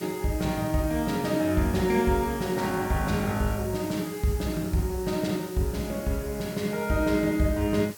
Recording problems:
hiss; SNR 16 dB

